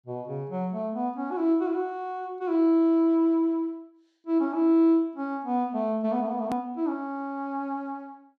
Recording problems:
click at an edit; at 6.5 s

